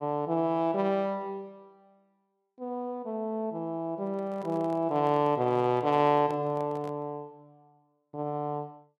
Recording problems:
microphone handling noise; from 4 to 7 s; peak -10 dB vs average level

